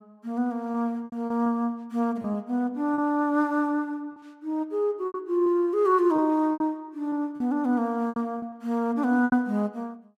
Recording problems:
packet loss; 8% of the sound replaced, filled with repeated pitch periods

